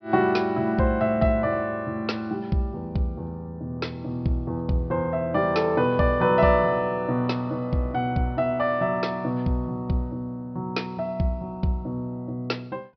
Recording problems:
low-pass filter; nothing above 5.5 kHz

